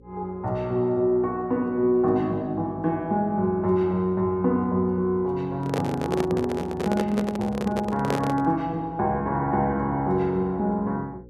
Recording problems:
hum; 60 Hz, harmonics up to 540 Hz, SNR 24 dB
microphone handling noise; from 5.5 to 8.5 s; peak +2 dB vs average level

